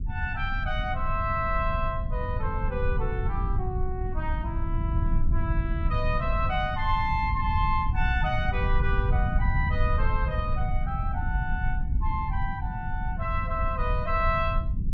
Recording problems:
rumble; below 90 Hz, SNR -1 dB

